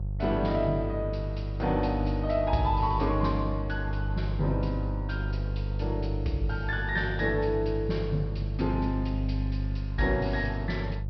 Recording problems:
treble cut off; nothing above 5.5 kHz
hum; 50 Hz, harmonics up to 350 Hz, SNR 2 dB

